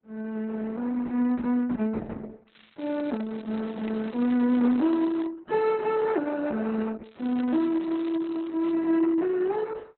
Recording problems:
lossy codec; Opus, log-spectral distance 4 dB, nothing above 4.1 kHz
crackling; from 2.5 to 5.5 s and from 7 to 8.5 s; loose cable, SNR 27 dB

